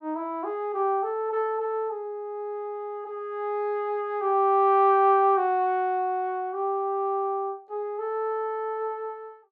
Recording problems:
none

